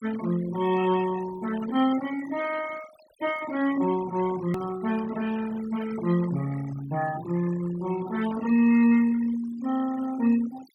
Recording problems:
denoising artefacts; signal-to-artefact ratio 15 dB
edit click; at 4.5 s

